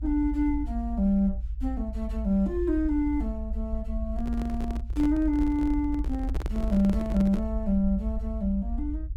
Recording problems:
rumble; below 58 Hz, strongest tone 56 Hz, SNR 6 dB
microphone handling noise; from 4 to 7.5 s; peak -5 dB vs average level

